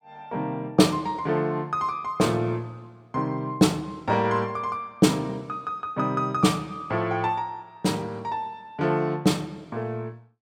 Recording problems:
none

